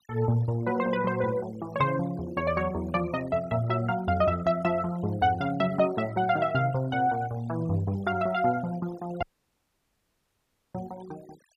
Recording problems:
noise reduction artefacts; signal-to-artefact ratio 21 dB
dropout; at 9 s for 1.5 s

